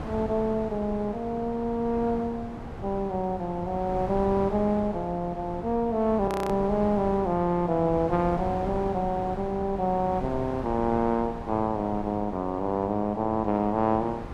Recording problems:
wind noise; below 690 Hz, SNR 11 dB
audio freezing; at 6.5 s

